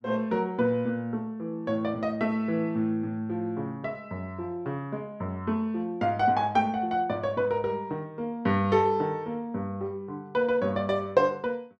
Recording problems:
none

